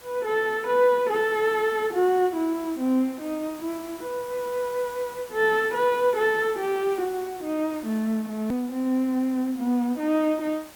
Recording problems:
background hiss; slope -2 dB per octave, SNR 20 dB
click at an edit; at 8.5 s

